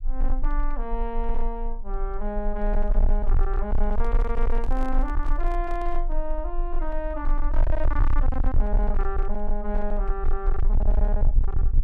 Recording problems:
distortion; hard clipping, uneven, signal-to-distortion ratio 8 dB
rumble; below 34 Hz, strongest tone 20 Hz, SNR -4 dB
handling noise; from 4 to 6 s; peak -5 dB vs average level

